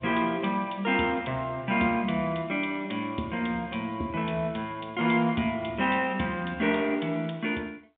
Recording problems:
telephone audio; 170 Hz to 3.7 kHz, G.711

